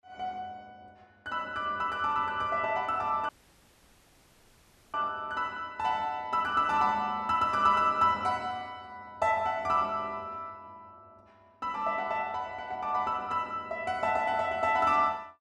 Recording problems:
audio cutting out; at 3.5 s for 1.5 s

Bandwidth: 13 kHz